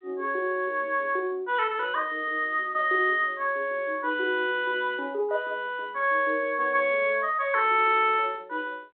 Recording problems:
telephone audio; 280 Hz to 3.4 kHz, G.726

